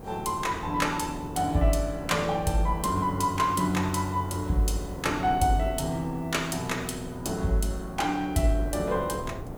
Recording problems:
hiss; SNR 28 dB
wind noise; below 440 Hz, SNR 13 dB

